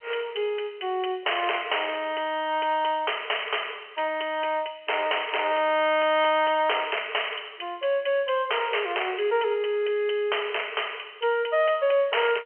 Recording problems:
telephone audio; 340 Hz to 3.2 kHz, G.711
distorted audio; soft clipping, signal-to-distortion ratio 9 dB

